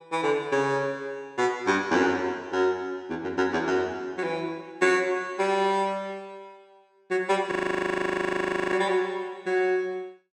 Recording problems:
audio freezing; at 7.5 s for 1 s

